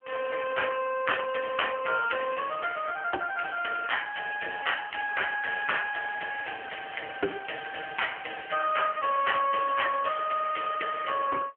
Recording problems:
phone line; 300 Hz to 3.3 kHz, AMR-NB
crackling; from 5.5 to 10 s; loose cable, SNR 17 dB

